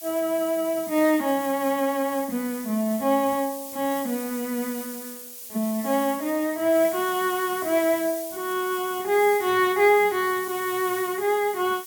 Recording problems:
hiss; slope +5 dB per octave, SNR 12 dB

